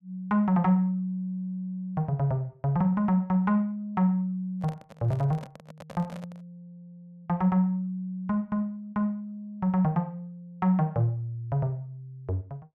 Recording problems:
microphone handling noise; from 4.5 to 6.5 s; peak -10 dB vs average level

